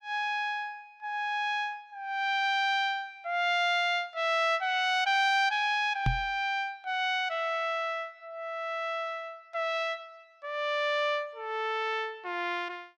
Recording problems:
knock on the microphone; at 6 s; peak +4 dB vs average level

